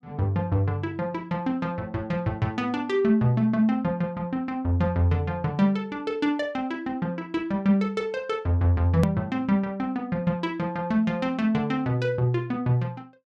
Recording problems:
click at an edit; at 9 s

